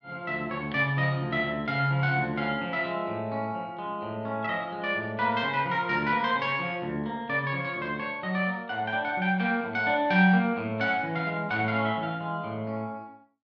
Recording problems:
none

